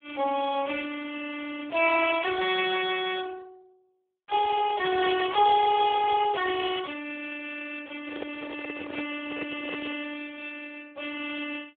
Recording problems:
phone line; 300 Hz to 2.9 kHz, Speex
handling noise; from 8 to 10 s; peak -4 dB vs average level

